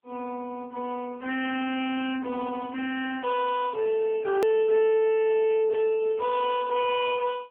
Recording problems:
telephone audio; 280 Hz to 2.6 kHz, AMR-NB
distortion; soft clipping, signal-to-distortion ratio 10 dB
edit click; at 4.5 s

